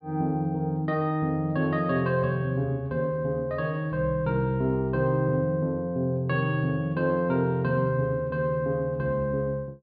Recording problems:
treble missing; nothing above 5 kHz

